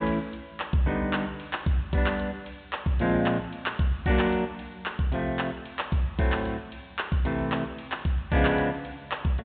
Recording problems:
treble missing; nothing above 4 kHz

